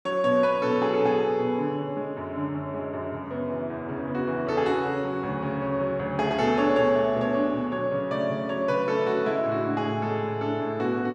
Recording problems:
none

